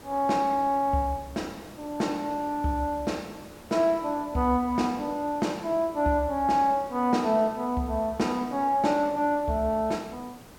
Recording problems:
background hiss; slope -5 dB per octave, SNR 21 dB

